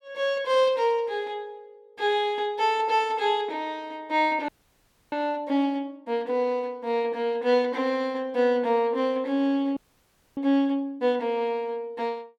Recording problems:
audio freezing; at 4.5 s for 0.5 s and at 10 s for 0.5 s

